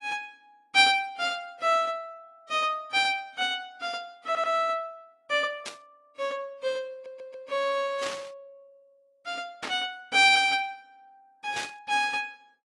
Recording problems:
lossy codec; AAC, log-spectral distance 2 dB, nothing above 9.5 kHz
audio stuttering; at 4.5 s and at 7 s
static burst; 4 times, first at 5.5 s; peak -3 dB vs average level

